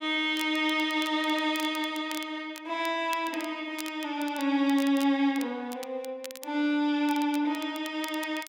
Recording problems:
crackling; vinyl, SNR 17 dB

